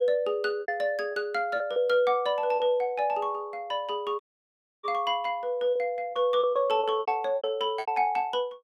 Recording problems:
packet loss; 9% of the sound replaced, filled with repeated pitch periods
dropout; at 4 s for 0.5 s

